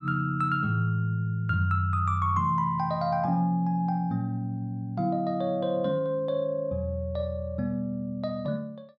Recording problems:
none

